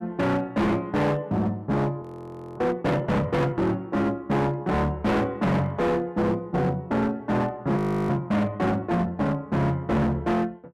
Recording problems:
distortion; hard clipping, signal-to-distortion ratio 6 dB
frozen audio; at 2 s for 0.5 s and at 8 s

